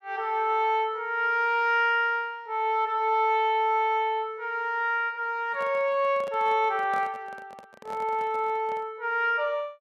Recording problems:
microphone handling noise; from 5.5 to 9 s; peak -12 dB vs average level

